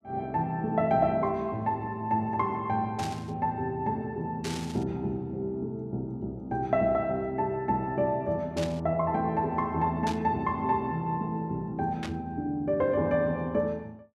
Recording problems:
burst of static; 5 times, first at 3 s; peak -4 dB vs average level

